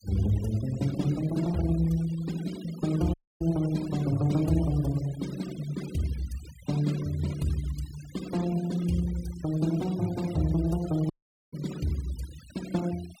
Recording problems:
noise reduction artefacts; signal-to-artefact ratio 18 dB
audio cutting out; at 3 s and at 11 s

